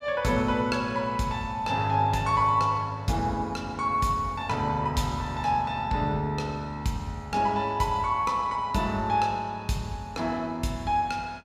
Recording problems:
none

